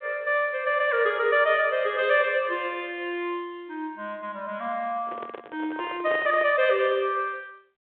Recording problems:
phone line; 260 Hz to 3.5 kHz, G.726
handling noise; from 5 to 6.5 s; peak -7 dB vs average level

